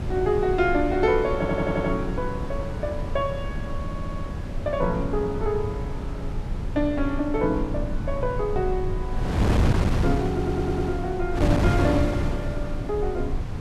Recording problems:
rumble; below 76 Hz, strongest tone 28 Hz, SNR 9 dB
wind noise; below 300 Hz, SNR 3 dB
audio stuttering; at 1.5 s, at 4 s and at 10 s

